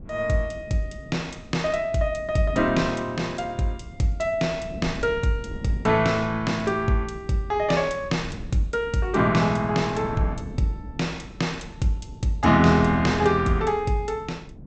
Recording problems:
treble missing; nothing above 8 kHz
wind on the microphone; below 230 Hz, SNR 16 dB

